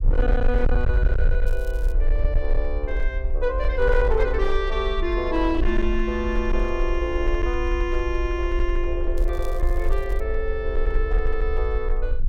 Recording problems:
distorted audio; hard clipping, signal-to-distortion ratio 12 dB
low-frequency rumble; below 48 Hz, SNR 0 dB
crackle; at 1.5 s and from 9 to 10 s; loose cable, SNR 24 dB

